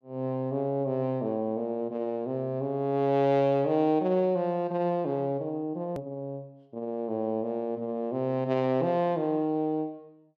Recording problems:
click at an edit; at 6 s

